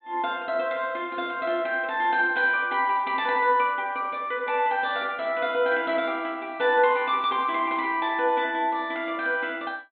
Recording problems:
low-pass filter; nothing above 4 kHz

